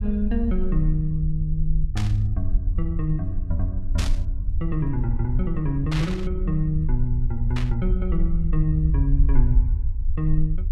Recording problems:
low-frequency rumble; below 58 Hz, SNR 0 dB
burst of static; 4 times, first at 2 s; peak -1 dB vs average level

